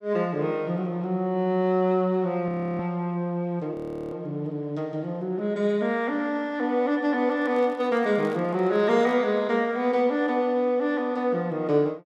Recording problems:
frozen audio; at 2.5 s and at 3.5 s
microphone handling noise; from 7.5 to 9.5 s; peak -12 dB vs average level

